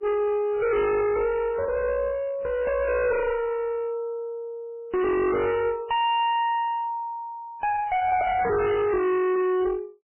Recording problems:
lossy compression; MP3, log-spectral distance 2 dB, nothing above 2.7 kHz
distortion; hard clipping, uneven, signal-to-distortion ratio 4 dB

